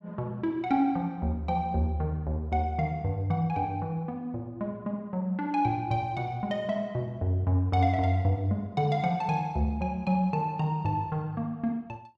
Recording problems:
none

